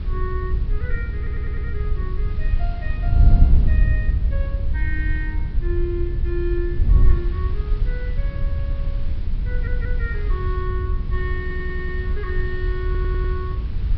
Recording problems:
treble missing; nothing above 5.5 kHz
electrical hum; 60 Hz, harmonics up to 480 Hz, SNR 10 dB
hiss; SNR 15 dB
wind noise; below 72 Hz, SNR -10 dB
audio stuttering; 4 times, first at 1 s

